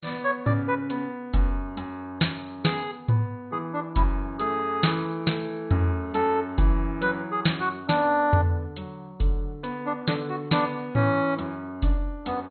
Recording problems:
lossy compression; MP2, log-spectral distance 4 dB, nothing above 4.2 kHz

